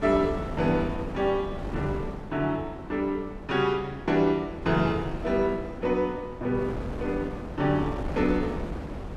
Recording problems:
wind noise; below 430 Hz, SNR 8 dB

